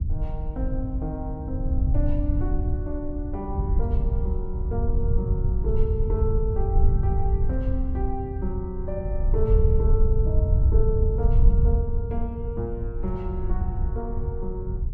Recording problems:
low-frequency rumble; below 80 Hz, SNR -6 dB

